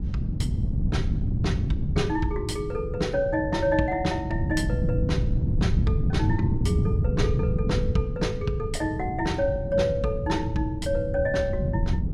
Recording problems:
wind noise; below 160 Hz, SNR 0 dB

